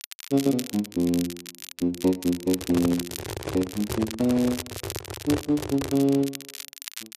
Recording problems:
lossy compression; AAC, then AAC, log-spectral distance 2 dB, nothing above 11.6 kHz
crackling; vinyl, SNR 12 dB
handling noise; from 2.5 to 6 s; peak 0 dB vs average level

